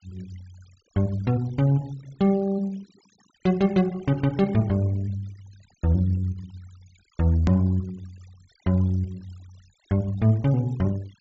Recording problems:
treble missing; nothing above 8 kHz
denoising artefacts; signal-to-artefact ratio 27 dB
edit click; at 7.5 s

